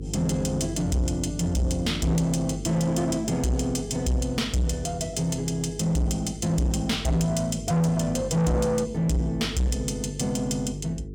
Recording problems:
distorted audio; soft clipping, signal-to-distortion ratio 8 dB
mains hum; 50 Hz, harmonics up to 450 Hz, SNR 12 dB

